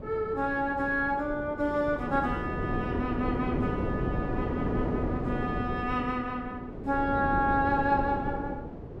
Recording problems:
wind noise; below 430 Hz, SNR 4 dB

